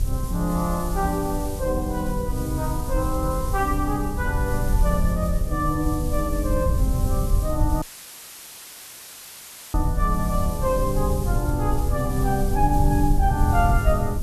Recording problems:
hum; 60 Hz, harmonics up to 600 Hz, SNR 22 dB
background hiss; SNR 14 dB
low-frequency rumble; below 64 Hz, strongest tone 38 Hz, SNR 10 dB
wind noise; below 86 Hz, SNR 2 dB
dropout; at 8 s for 2 s; filled with static

